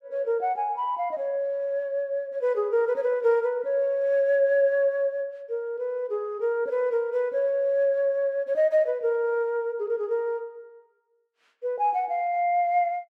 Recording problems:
none

